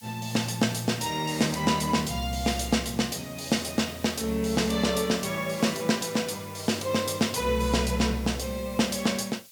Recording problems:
hiss; slope +5 dB per octave, SNR 19 dB

